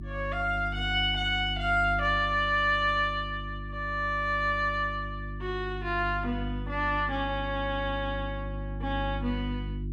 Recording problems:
hum; 50 Hz, harmonics up to 350 Hz, SNR 8 dB

